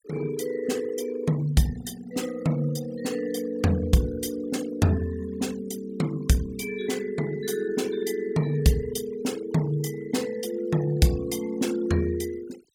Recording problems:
noise reduction artefacts; signal-to-artefact ratio 19 dB

